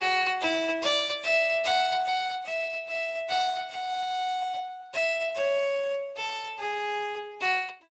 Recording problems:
codec artefacts; Speex, log-spectral distance 4 dB, nothing above 7.8 kHz

